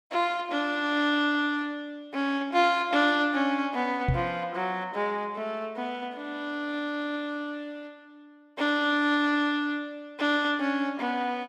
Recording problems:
knock on the microphone; at 4 s; peak +5 dB vs average level

